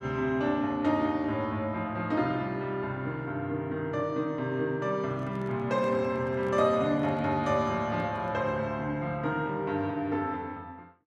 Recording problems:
microphone handling noise; from 5 to 8.5 s; peak -9 dB vs average level

